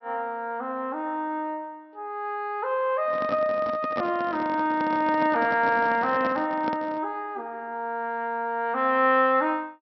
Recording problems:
low-pass filter; nothing above 5.7 kHz
handling noise; from 3 to 7 s; peak -3 dB vs average level

